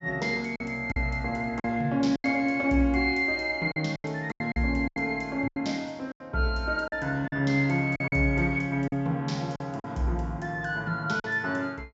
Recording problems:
treble missing; nothing above 8 kHz
lost packets; 8% of the sound replaced, filled with silence

